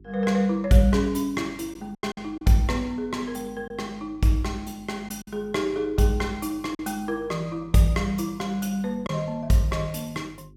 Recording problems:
electrical hum; 50 Hz, harmonics up to 400 Hz, SNR 25 dB
packet loss; 3% of the sound replaced, filled with silence

